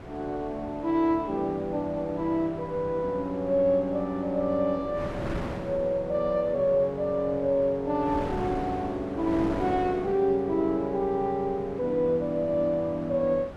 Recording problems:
wind on the microphone; below 800 Hz, SNR 13 dB

